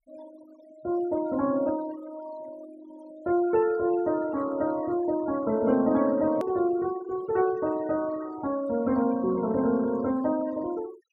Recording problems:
denoising artefacts; signal-to-artefact ratio 21 dB
hard cut with a click; at 6.5 s

